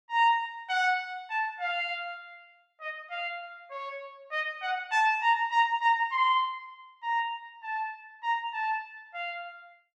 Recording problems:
none

